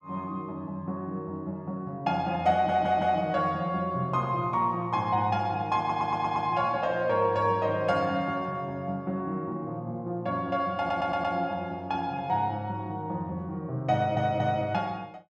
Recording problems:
stutter; 4 times, first at 2.5 s

